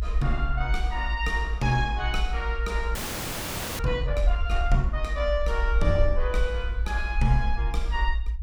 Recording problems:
low-frequency rumble; below 58 Hz, SNR 0 dB
frozen audio; at 3 s for 1 s

